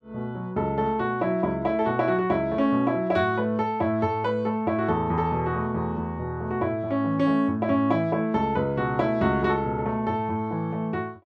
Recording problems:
none

